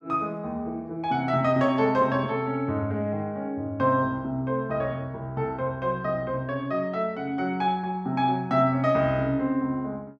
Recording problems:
none

